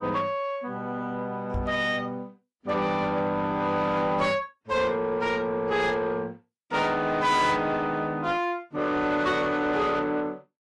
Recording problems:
lossy codec; AAC, log-spectral distance 2 dB, nothing above 11.3 kHz
distorted audio; soft clipping, signal-to-distortion ratio 10 dB
microphone bump; at 1.5 s; peak -1 dB vs average level

